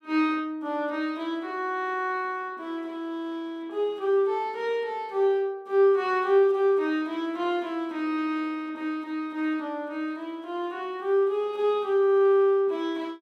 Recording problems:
none

